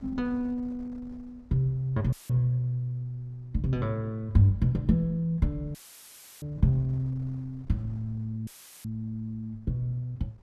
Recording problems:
wind noise; below 140 Hz, SNR 25 dB
dropout; at 2 s, at 6 s for 0.5 s and at 8.5 s; filled with static

